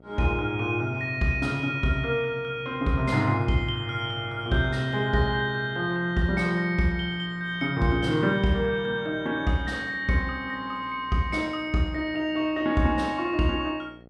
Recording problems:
mains hum; 60 Hz, harmonics up to 1.4 kHz, SNR 24 dB

